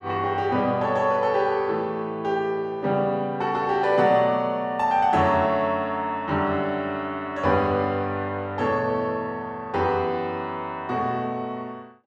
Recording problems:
none

